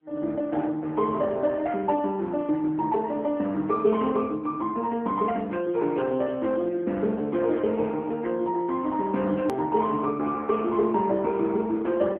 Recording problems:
telephone audio; 170 Hz to 3.6 kHz, AMR-NB
hard cut with a click; at 9.5 s

